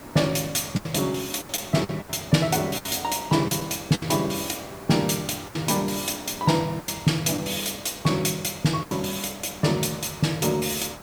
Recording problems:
background hiss; SNR 17 dB
lost packets; 7% of the sound replaced, filled with the last packet

